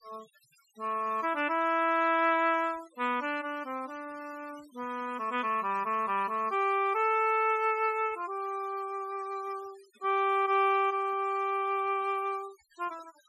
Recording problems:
noise reduction artefacts; signal-to-artefact ratio 25 dB

